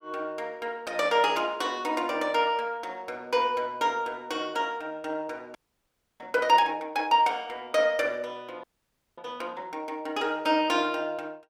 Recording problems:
audio freezing; at 5.5 s for 0.5 s and at 8.5 s for 0.5 s

